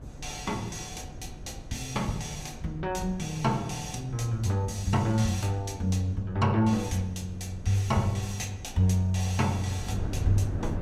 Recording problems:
wind on the microphone; below 180 Hz, SNR 13 dB

